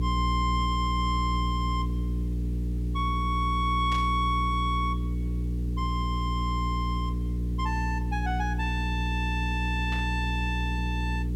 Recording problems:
electrical hum; 60 Hz, harmonics up to 420 Hz, SNR 0 dB
hiss; SNR 19 dB
burst of static; at 4 s and at 10 s; peak -7 dB vs average level

